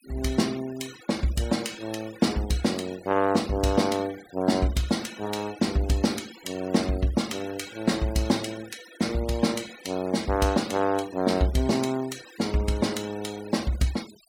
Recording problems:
noise reduction artefacts; signal-to-artefact ratio 18 dB

